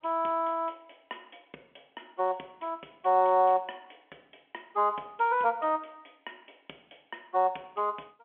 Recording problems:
phone line; 260 Hz to 3.4 kHz, G.711

